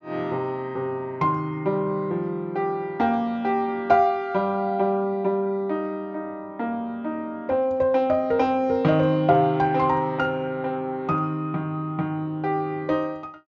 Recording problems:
low-pass filter; nothing above 7.3 kHz

